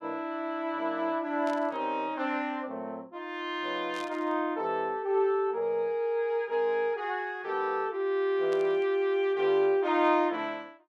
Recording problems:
static burst; at 1.5 s, at 4 s and at 8.5 s; peak -12 dB vs average level

